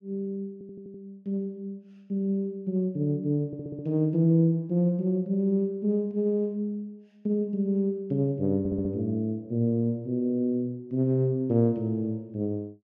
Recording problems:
audio stuttering; at 0.5 s, at 3.5 s and at 8.5 s

